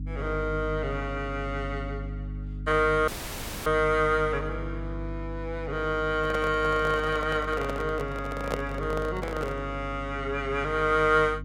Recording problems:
mains hum; 50 Hz, harmonics up to 300 Hz, SNR 10 dB
dropout; at 3 s for 0.5 s
handling noise; from 6 to 9.5 s; peak +2 dB vs average level

